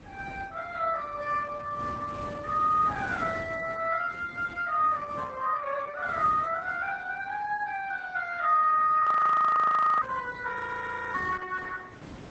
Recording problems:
lossy codec; Vorbis, then Opus, log-spectral distance 3 dB, nothing above 8 kHz
wind on the microphone; below 670 Hz, SNR 18 dB
audio freezing; at 9 s for 1 s and at 11 s for 0.5 s

